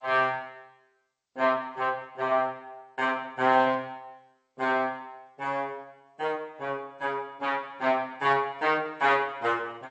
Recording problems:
lossy codec; G.722, then AAC, log-spectral distance 2 dB, nothing above 7.3 kHz

